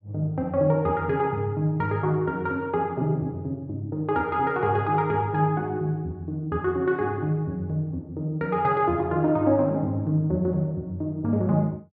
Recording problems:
none

